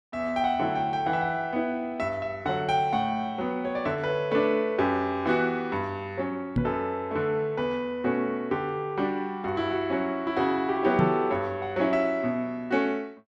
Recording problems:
microphone thump; at 6.5 s and at 11 s; peak +5 dB vs average level

